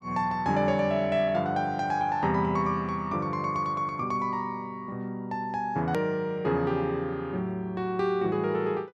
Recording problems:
edit click; at 6 s

